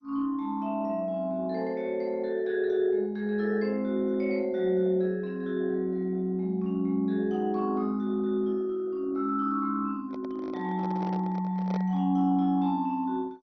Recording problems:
lossy compression; MP2, log-spectral distance 2 dB, nothing above 6 kHz
microphone handling noise; from 10 to 12 s; peak -7 dB vs average level

